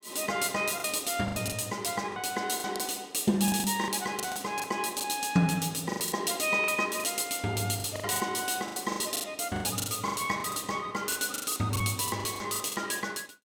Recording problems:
packet loss; 14% of the sound replaced, filled with the last packet

